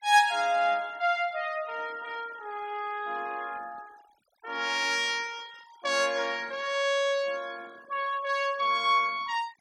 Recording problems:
noise reduction artefacts; signal-to-artefact ratio 23 dB

